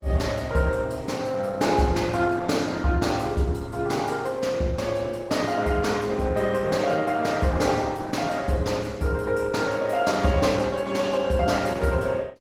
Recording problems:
lossy compression; Opus, log-spectral distance 4 dB, nothing above 19 kHz

